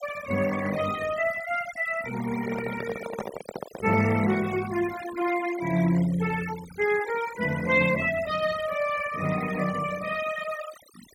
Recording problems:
noise reduction artefacts; signal-to-artefact ratio 14 dB
handling noise; from 2.5 to 4 s; peak -3 dB vs average level

